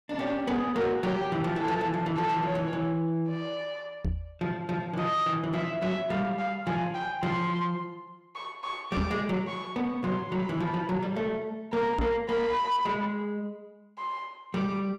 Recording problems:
distorted audio; soft clipping, signal-to-distortion ratio 10 dB
microphone bump; at 4 s, at 9 s and at 12 s; peak +3 dB vs average level

